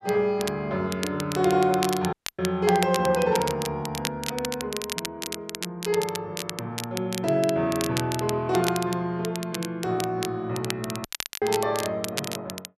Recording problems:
crackle; vinyl, SNR 8 dB
dropout; at 2 s and at 11 s

